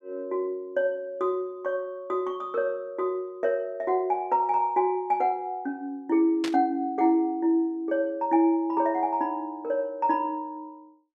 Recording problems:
burst of static; at 6.5 s; peak -3 dB vs average level

